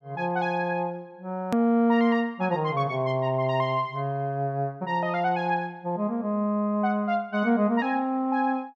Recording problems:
hard cut with a click; at 1.5 s

